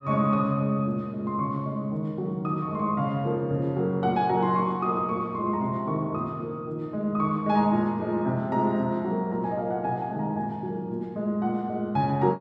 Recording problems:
none

